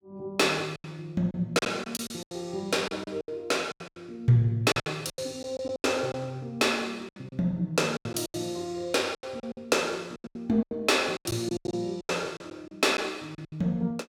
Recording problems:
packet loss; 15% of the sound replaced, filled with silence

